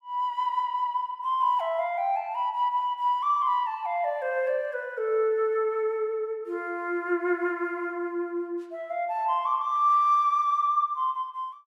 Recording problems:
none

